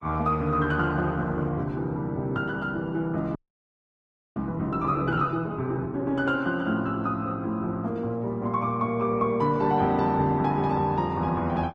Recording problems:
lossy compression; Opus, then Opus, log-spectral distance 2 dB
audio freezing; at 3.5 s for 1 s

